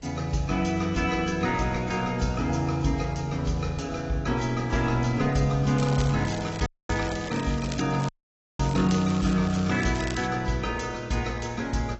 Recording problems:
lossy compression; AAC, log-spectral distance 5 dB, nothing above 6.9 kHz
wind noise; below 350 Hz, SNR 20 dB
crackle; from 6 to 8 s and from 8 to 10 s; loose cable, SNR 15 dB
dropout; at 6.5 s and at 8 s for 0.5 s

